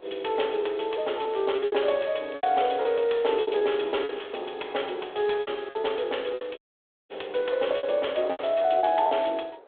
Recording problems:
telephone audio; 340 Hz to 3.6 kHz, G.726
wind noise; below 760 Hz, SNR 24 dB
packet loss; 12% of the sound replaced, filled with repeated pitch periods
crackle; at 1.5 s and from 2 to 4.5 s; loose cable, SNR 28 dB
audio cutting out; at 6.5 s for 0.5 s

